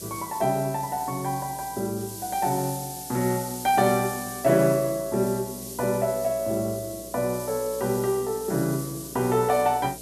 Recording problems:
mains hum; 60 Hz, harmonics up to 660 Hz, SNR 22 dB
background hiss; SNR 11 dB

